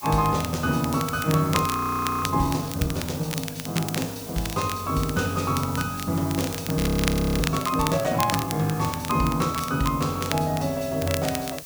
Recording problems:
background hiss; slope +1 dB per octave, SNR 14 dB
crackling; vinyl, SNR 9 dB
frozen audio; at 1.5 s for 0.5 s and at 7 s for 0.5 s

